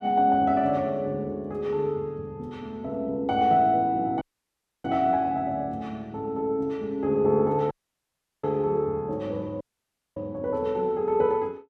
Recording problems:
audio cutting out; at 4 s for 0.5 s, at 7.5 s for 0.5 s and at 9.5 s for 0.5 s

